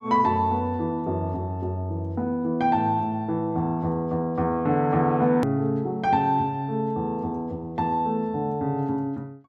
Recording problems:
hard cut with a click; at 5.5 s

